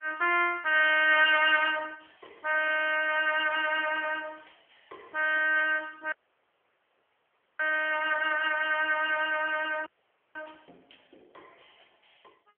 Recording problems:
telephone audio; 450 Hz to 3.1 kHz, AMR-NB
audio cutting out; at 6 s for 1.5 s and at 10 s

